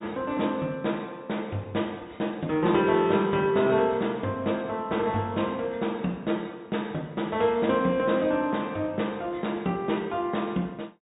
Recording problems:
treble missing; nothing above 4 kHz

